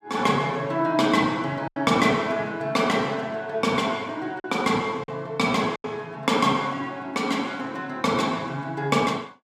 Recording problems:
packet loss; 3% of the sound replaced, filled with silence

